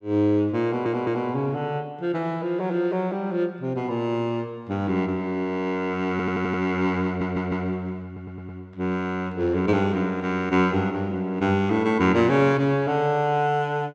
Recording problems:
stutter; 4 times, first at 0.5 s

